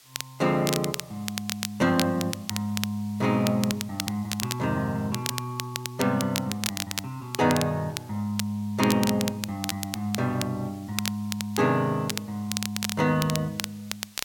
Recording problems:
hiss; slope +2 dB per octave, SNR 24 dB
crackle; vinyl, SNR 6 dB

